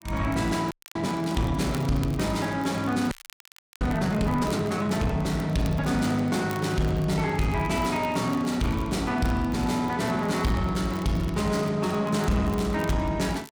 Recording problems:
distortion; soft clipping, signal-to-distortion ratio 12 dB
crackle; vinyl, SNR 22 dB
frozen audio; at 0.5 s and at 3 s for 0.5 s

